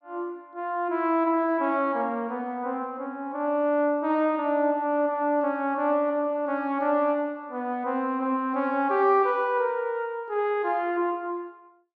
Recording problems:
none

